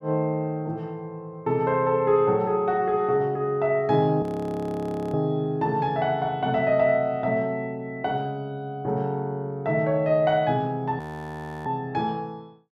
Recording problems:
frozen audio; at 4 s for 1 s and at 11 s for 0.5 s

